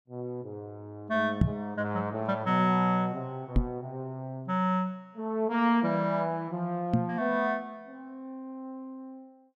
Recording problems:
knock on the microphone; at 1.5 s, at 3.5 s and at 7 s; peak +9 dB vs average level

